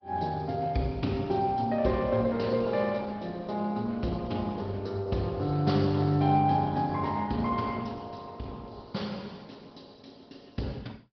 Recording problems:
low-pass filter; nothing above 5.3 kHz
lossy codec; Opus, log-spectral distance 4 dB

